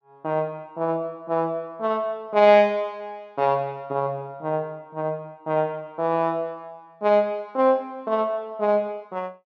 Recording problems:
none

